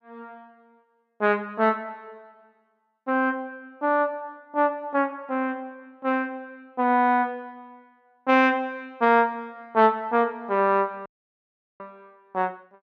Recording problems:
audio cutting out; at 11 s for 0.5 s

